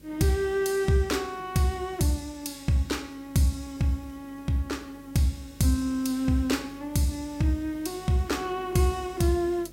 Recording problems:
hum; 50 Hz, harmonics up to 600 Hz, SNR 25 dB
background hiss; slope +1 dB per octave, SNR 29 dB

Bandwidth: 16 kHz